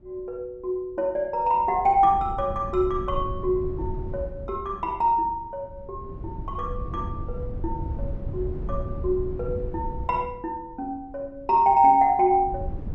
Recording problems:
wind on the microphone; below 110 Hz, SNR 11 dB

